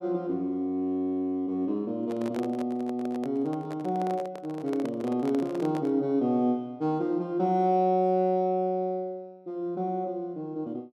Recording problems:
handling noise; from 2 to 6 s; peak -6 dB vs average level

